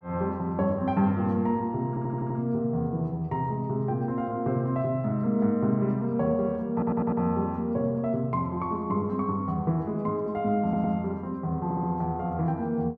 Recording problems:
stutter; 4 times, first at 2 s

